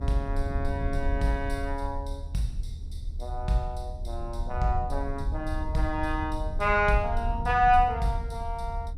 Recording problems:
rumble; below 74 Hz, SNR 6 dB

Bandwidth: 15.5 kHz